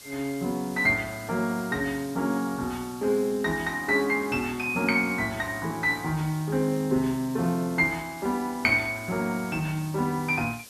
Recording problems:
background hiss; slope 0 dB per octave, SNR 18 dB

